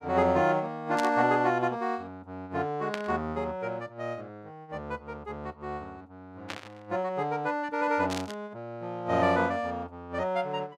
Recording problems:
burst of static; 4 times, first at 1 s; peak -2 dB vs average level

